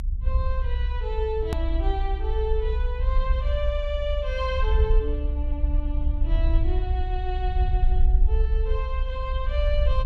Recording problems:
rumble; below 62 Hz, SNR -6 dB
hard cut with a click; at 1.5 s

